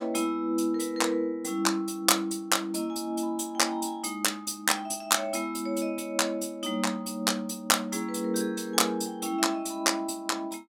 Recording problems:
none

